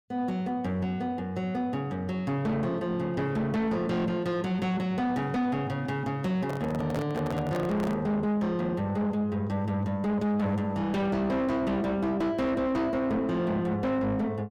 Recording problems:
distortion; soft clipping, signal-to-distortion ratio 8 dB
microphone handling noise; from 6.5 to 8 s; peak -1 dB vs average level

